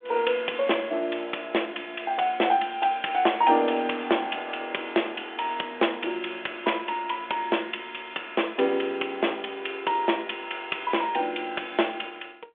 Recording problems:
phone line; 280 Hz to 3.5 kHz, G.726

